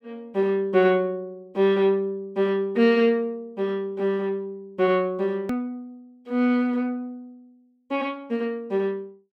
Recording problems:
edit click; at 5.5 s

